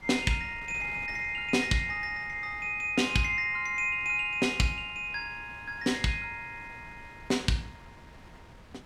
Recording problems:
wind on the microphone; below 1.1 kHz, SNR 21 dB

